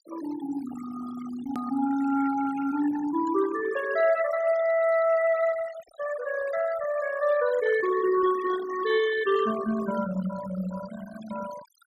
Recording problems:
denoising artefacts; signal-to-artefact ratio 14 dB
click at an edit; at 1.5 s

